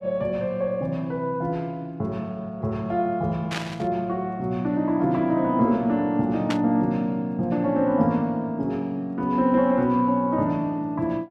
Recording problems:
static burst; at 3.5 s and at 6.5 s; peak -2 dB vs average level

